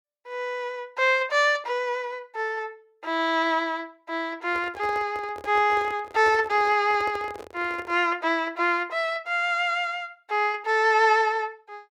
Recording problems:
microphone handling noise; from 4.5 to 8 s; peak -8 dB vs average level

